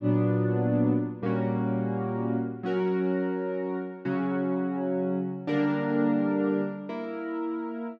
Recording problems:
none

